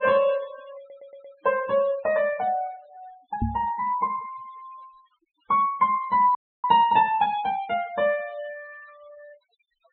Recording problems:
treble cut off; nothing above 4 kHz
denoising artefacts; signal-to-artefact ratio 25 dB
stutter; at 1 s
knock on the microphone; at 3.5 s; peak +1 dB vs average level
audio freezing; at 6.5 s

